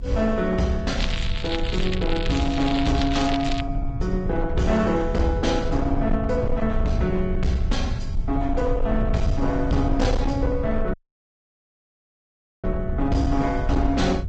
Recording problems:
lossy compression; G.722, then Vorbis, log-spectral distance 3 dB, nothing above 7.1 kHz
distortion; hard clipping, signal-to-distortion ratio 12 dB
rumble; below 82 Hz, SNR 4 dB
crackling; from 1 to 3.5 s; loose cable, SNR 9 dB
dropout; at 11 s for 1.5 s

